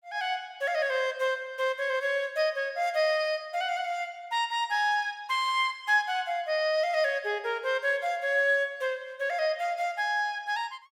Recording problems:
none

